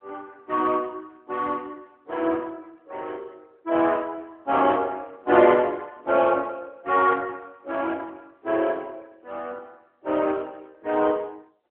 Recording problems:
phone line; 260 Hz to 3.3 kHz, AMR-NB

